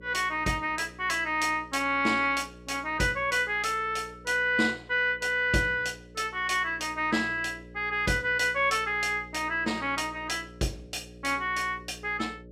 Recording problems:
hum; 60 Hz, harmonics up to 600 Hz, SNR 21 dB

